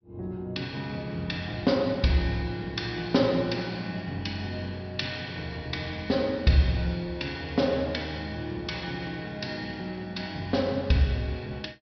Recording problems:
treble cut off; nothing above 5.5 kHz

